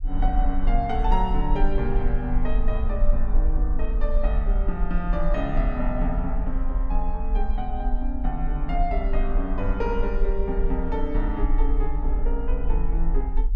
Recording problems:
rumble; below 42 Hz, strongest tone 20 Hz, SNR -2 dB

